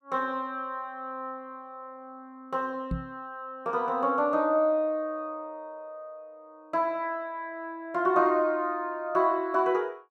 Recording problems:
microphone bump; at 3 s; peak 0 dB vs average level

